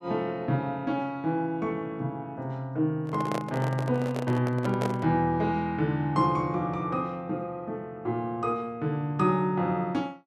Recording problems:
microphone handling noise; from 3 to 5 s; peak +1 dB vs average level

